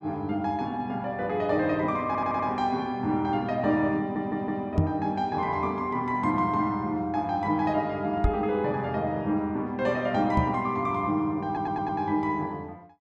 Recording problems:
stutter; at 2 s, at 4 s and at 11 s
microphone bump; at 5 s, at 8 s and at 10 s; peak +7 dB vs average level

